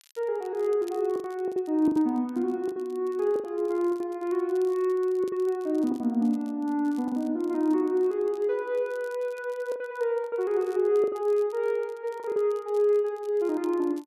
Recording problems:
crackling; vinyl, SNR 30 dB
packet loss; 7% of the sound replaced, filled with the last packet

